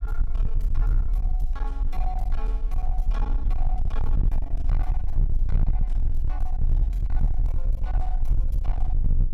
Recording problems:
distortion; hard clipping, uneven, signal-to-distortion ratio 6 dB
low-frequency rumble; below 44 Hz, strongest tone 20 Hz, SNR -15 dB

